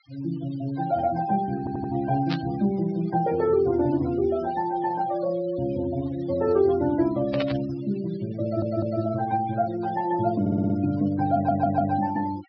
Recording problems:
low-pass filter; nothing above 5.5 kHz
denoising artefacts; signal-to-artefact ratio 18 dB
audio stuttering; 4 times, first at 1.5 s
static burst; at 2.5 s and at 7.5 s; peak -3 dB vs average level

